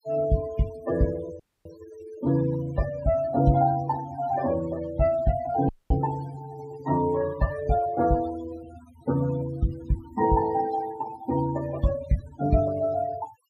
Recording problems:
denoising artefacts; signal-to-artefact ratio 15 dB
audio cutting out; at 1.5 s and at 5.5 s

